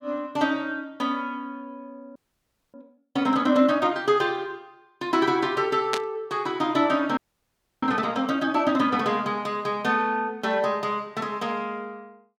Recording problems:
audio freezing; at 2 s for 0.5 s and at 7 s for 0.5 s
burst of static; at 6 s; peak +2 dB vs average level

